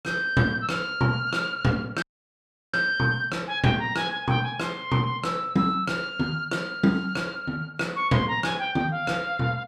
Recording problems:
audio cutting out; at 2 s for 0.5 s

